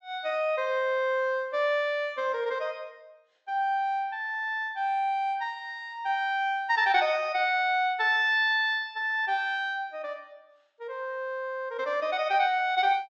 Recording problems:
treble cut off; nothing above 7.9 kHz

